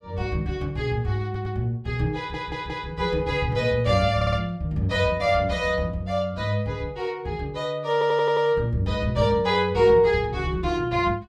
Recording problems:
audio stuttering; 4 times, first at 1.5 s

